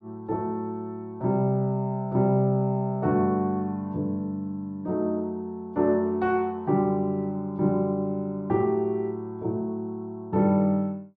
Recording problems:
none

